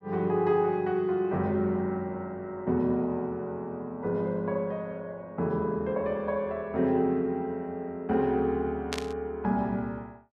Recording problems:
burst of static; at 9 s; peak +1 dB vs average level

